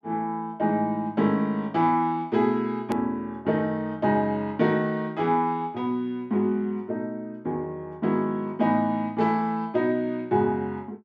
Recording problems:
hard cut with a click; at 3 s

